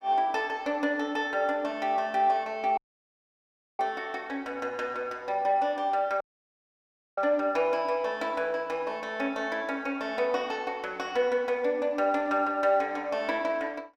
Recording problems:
audio cutting out; at 3 s for 1 s and at 6 s for 1 s

